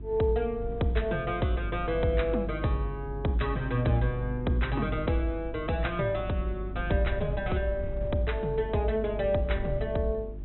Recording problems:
treble cut off; nothing above 3.9 kHz
electrical hum; 50 Hz, harmonics up to 400 Hz, SNR 9 dB
wind on the microphone; below 100 Hz, SNR 14 dB

